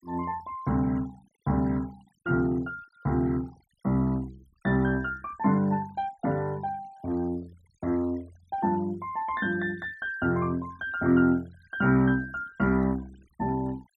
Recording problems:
noise reduction artefacts; signal-to-artefact ratio 25 dB

